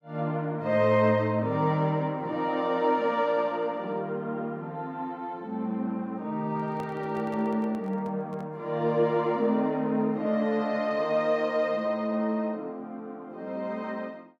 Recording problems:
microphone handling noise; from 6.5 to 8.5 s; peak -11 dB vs average level

